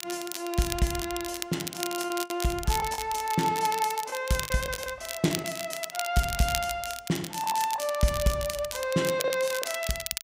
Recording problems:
crackling; vinyl, SNR 6 dB
lost packets; 6% of the sound replaced, filled with the last packet

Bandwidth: 15.5 kHz